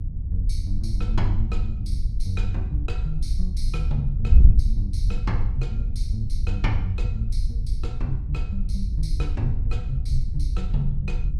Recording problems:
low-frequency rumble; below 60 Hz, SNR 10 dB
wind on the microphone; below 62 Hz, SNR -5 dB

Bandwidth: 14.5 kHz